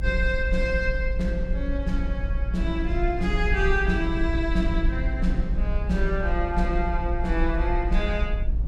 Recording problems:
low-frequency rumble; below 54 Hz, SNR 0 dB

